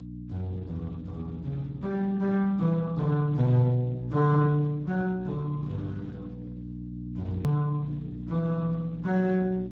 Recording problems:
lossy codec; Speex, log-spectral distance 2 dB, nothing above 19.5 kHz
electrical hum; 60 Hz, harmonics up to 300 Hz, SNR 11 dB
click at an edit; at 7.5 s

